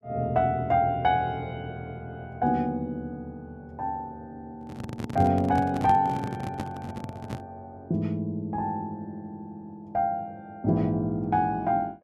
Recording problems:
handling noise; from 4.5 to 7.5 s; peak 0 dB vs average level

